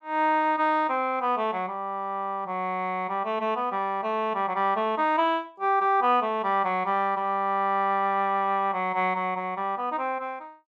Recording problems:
none

